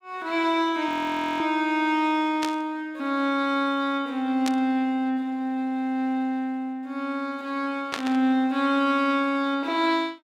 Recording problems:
audio freezing; at 1 s for 0.5 s
burst of static; at 2.5 s, at 4.5 s and at 8 s; peak 0 dB vs average level

